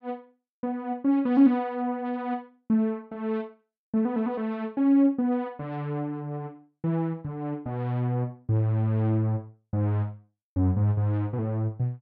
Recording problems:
none

